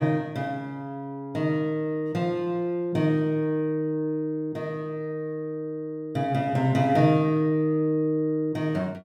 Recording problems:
none

